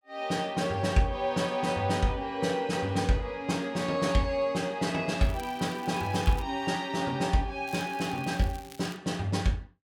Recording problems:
crackle; from 5 to 6.5 s and from 7.5 to 9 s; loose cable, SNR 21 dB

